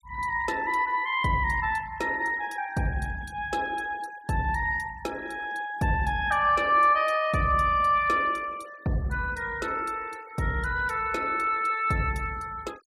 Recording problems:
denoising artefacts; signal-to-artefact ratio 24 dB

